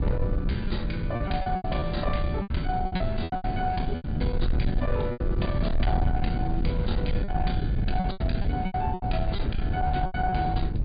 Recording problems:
treble missing; nothing above 4.8 kHz
distorted audio; soft clipping, signal-to-distortion ratio 11 dB
low-frequency rumble; below 120 Hz, SNR 0 dB
wind noise; below 1.5 kHz, SNR 22 dB
lost packets; 12% of the sound replaced, filled with repeated pitch periods

